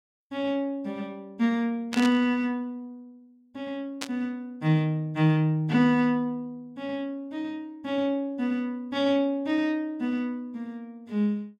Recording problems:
static burst; at 2 s and at 4 s; peak -1 dB vs average level

